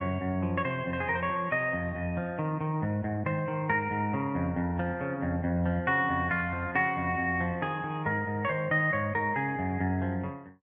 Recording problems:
codec artefacts; Vorbis, log-spectral distance 2 dB

